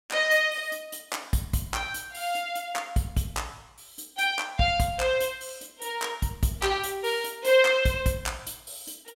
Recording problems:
none

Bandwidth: 16.5 kHz